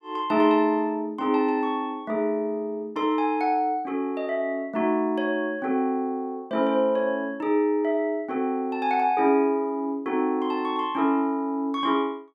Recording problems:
none

